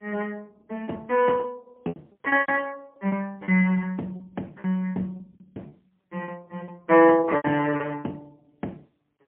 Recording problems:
phone line; 260 Hz to 2.9 kHz, AMR-NB, then MP3
lost packets; 14% of the sound replaced, filled with repeated pitch periods

